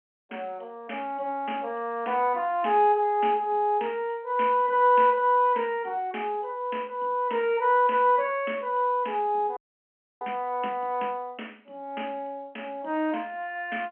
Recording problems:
phone line; 240 Hz to 3.2 kHz, G.711
audio freezing; at 9.5 s for 0.5 s

